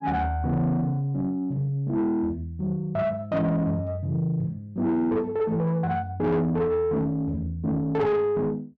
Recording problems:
distorted audio; soft clipping, signal-to-distortion ratio 11 dB

